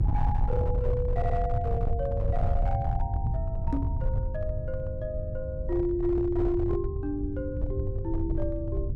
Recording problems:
distortion; hard clipping, signal-to-distortion ratio 12 dB
electrical hum; 50 Hz, harmonics up to 500 Hz, SNR 13 dB
low-frequency rumble; below 100 Hz, SNR -1 dB
audio stuttering; at 1 s
microphone thump; at 3.5 s; peak +6 dB vs average level

